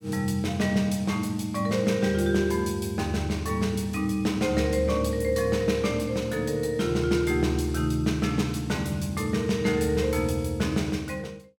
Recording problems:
none

